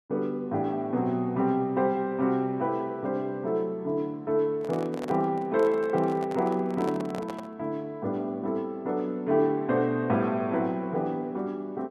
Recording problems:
handling noise; from 4.5 to 7.5 s; peak -5 dB vs average level

